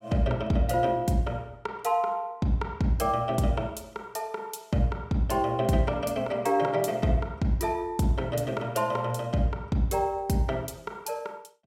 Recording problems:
none

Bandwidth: 16.5 kHz